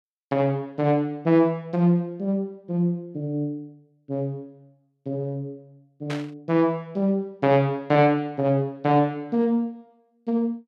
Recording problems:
static burst; at 6 s; peak -6 dB vs average level

